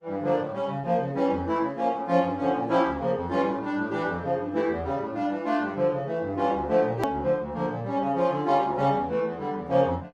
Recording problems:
lossy compression; Opus, log-spectral distance 2 dB, nothing above 15.1 kHz
click at an edit; at 7 s

